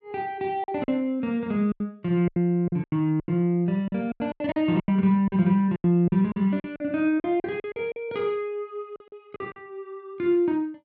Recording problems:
packet loss; 13% of the sound replaced, filled with silence

